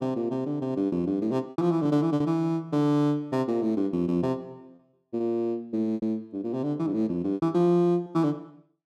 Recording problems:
lost packets; 5% of the sound replaced, filled with repeated pitch periods

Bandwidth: 13.5 kHz